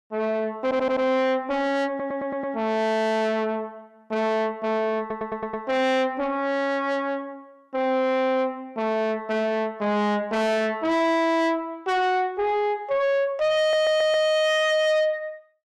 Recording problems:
distorted audio; soft clipping, signal-to-distortion ratio 6 dB
stutter; 4 times, first at 0.5 s

